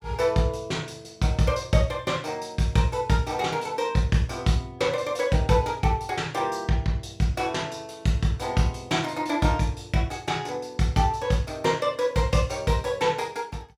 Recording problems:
none

